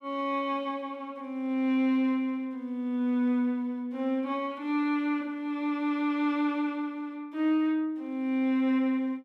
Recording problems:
none

